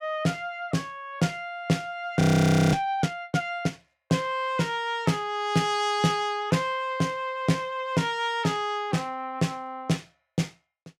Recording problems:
audio freezing; at 2 s for 0.5 s

